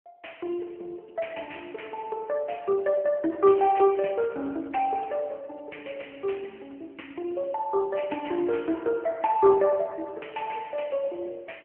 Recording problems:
telephone audio; 220 Hz to 3.1 kHz, AMR-NB

